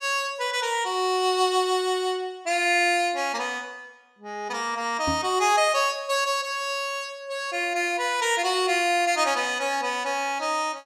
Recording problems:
microphone thump; at 5 s; peak -2 dB vs average level

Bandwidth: 14.5 kHz